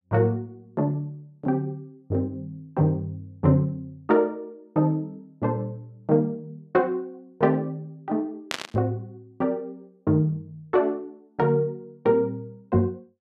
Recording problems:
static burst; at 8.5 s; peak +1 dB vs average level

